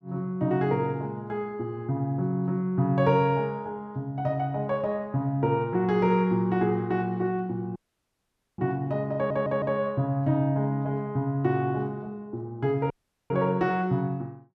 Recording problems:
audio cutting out; at 8 s for 1 s and at 13 s
stutter; at 9 s

